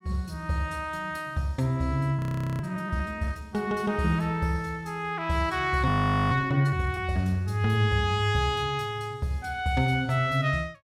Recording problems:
audio freezing; at 2 s and at 6 s

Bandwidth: 16 kHz